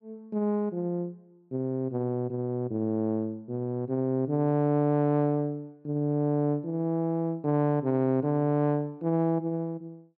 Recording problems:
none

